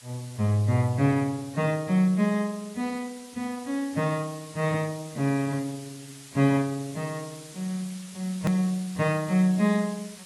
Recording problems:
lossy compression; AAC, log-spectral distance 7 dB, nothing above 20.1 kHz
background hiss; slope +2 dB per octave, SNR 18 dB
click at an edit; at 8.5 s

